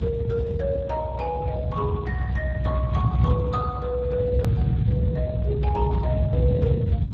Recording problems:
codec artefacts; Speex, log-spectral distance 3 dB, nothing above 15.1 kHz
low-frequency rumble; below 140 Hz, SNR -3 dB
edit click; at 4.5 s

